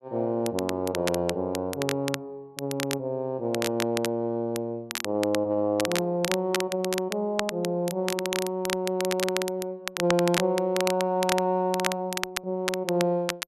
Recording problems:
crackle; vinyl, SNR 6 dB

